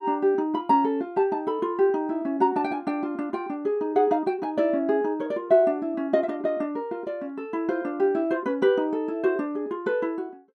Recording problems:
none

